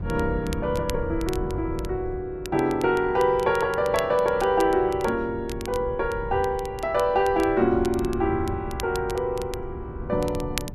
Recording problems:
wind noise; below 140 Hz, SNR 12 dB
crackle; vinyl, SNR 18 dB

